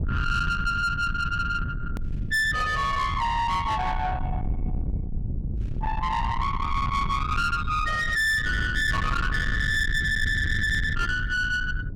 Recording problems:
distortion; soft clipping, signal-to-distortion ratio 8 dB
low-frequency rumble; below 1.1 kHz, SNR 5 dB
hard cut with a click; at 2 s

